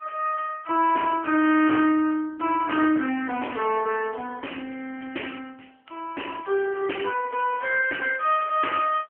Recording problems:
phone line; 260 Hz to 2.7 kHz, AMR-NB
distorted audio; soft clipping, signal-to-distortion ratio 12 dB

